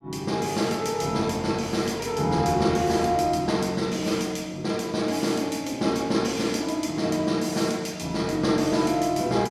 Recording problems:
none

